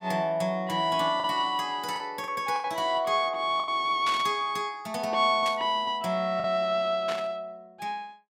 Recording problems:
packet loss; 4% of the sound replaced, filled with the last packet
burst of static; at 4 s, at 5.5 s and at 7 s; peak -4 dB vs average level

